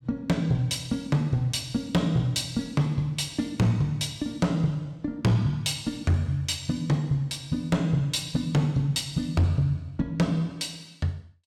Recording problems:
distorted audio; hard clipping, signal-to-distortion ratio 11 dB

